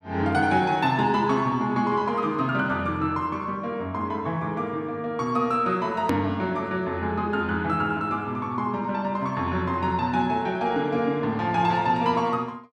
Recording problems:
hard cut with a click; at 6 s

